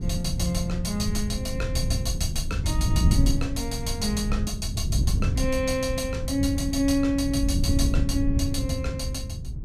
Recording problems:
wind noise; below 120 Hz, SNR 0 dB

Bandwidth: 14.5 kHz